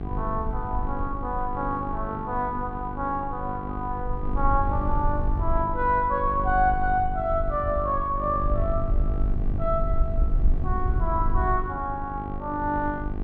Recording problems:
electrical hum; 50 Hz, harmonics up to 1.6 kHz, SNR 10 dB
low-frequency rumble; below 62 Hz, SNR 4 dB

